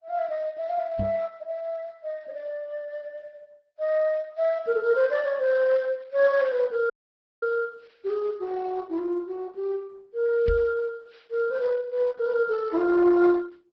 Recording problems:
codec artefacts; Vorbis, then Opus, log-spectral distance 2 dB
microphone thump; at 1 s and at 10 s; peak +1 dB vs average level
dropout; at 7 s for 0.5 s

